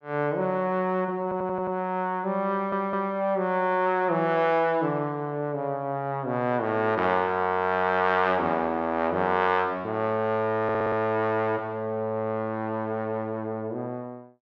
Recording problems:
stutter; at 1 s, at 2.5 s and at 11 s

